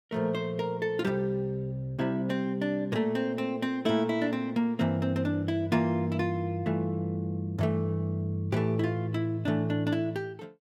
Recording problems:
none

